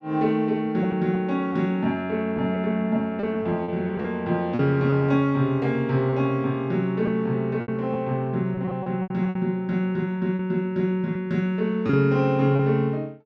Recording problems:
lost packets; 6% of the sound replaced, filled with repeated pitch periods

